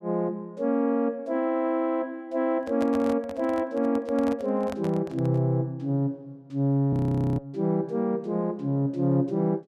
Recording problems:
microphone handling noise; from 2.5 to 5.5 s; peak -6 dB vs average level
frozen audio; at 7 s

